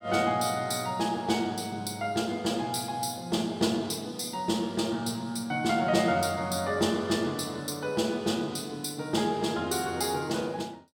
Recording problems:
none

